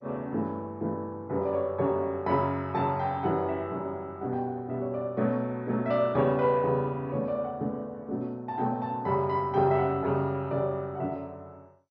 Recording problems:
codec artefacts; MP2, log-spectral distance 2 dB, nothing above 5.5 kHz

